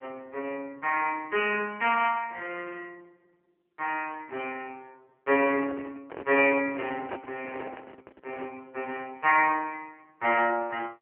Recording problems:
telephone audio; 300 Hz to 3 kHz, AMR-NB
handling noise; from 5.5 to 8.5 s; peak -5 dB vs average level

